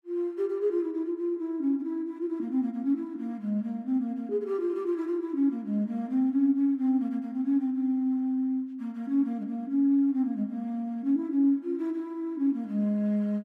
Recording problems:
none

